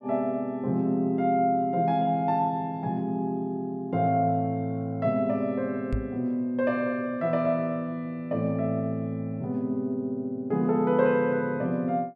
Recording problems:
microphone thump; at 6 s; peak +1 dB vs average level

